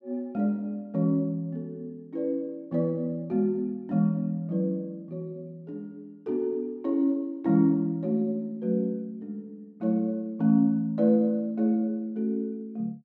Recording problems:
none

